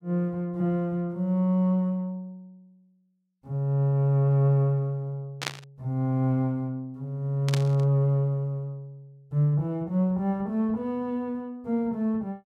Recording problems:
burst of static; at 5.5 s and at 7.5 s; peak +1 dB vs average level

